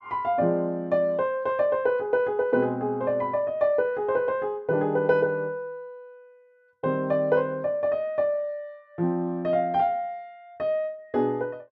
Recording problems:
none

